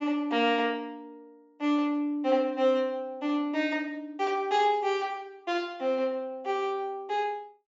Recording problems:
treble missing; nothing above 8 kHz

